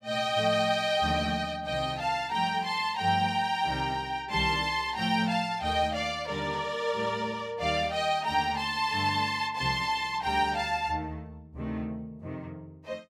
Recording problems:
none

